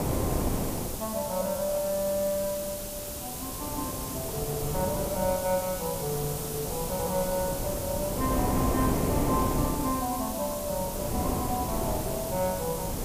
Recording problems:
background hiss; SNR 4 dB
wind noise; below 550 Hz, SNR 2 dB

